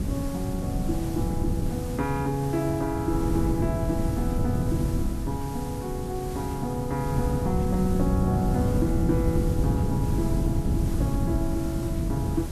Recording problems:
hiss; SNR 14 dB
wind on the microphone; below 180 Hz, SNR -1 dB

